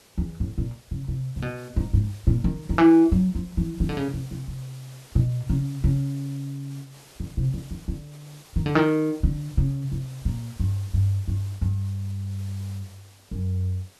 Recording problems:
hiss; slope -2 dB per octave, SNR 24 dB

